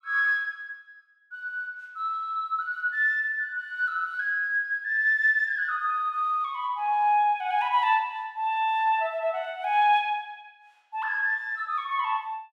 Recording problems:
none

